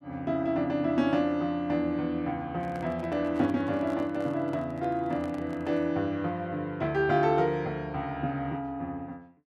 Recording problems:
handling noise; from 2.5 to 6 s; peak -12 dB vs average level

